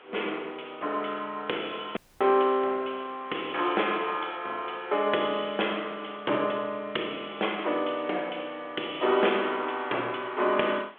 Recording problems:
telephone audio; 280 Hz to 3.4 kHz, G.726
hiss; SNR 22 dB
dropout; at 2 s

